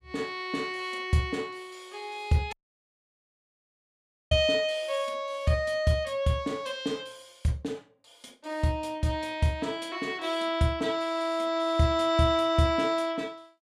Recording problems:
dropout; at 2.5 s for 2 s

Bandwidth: 13.5 kHz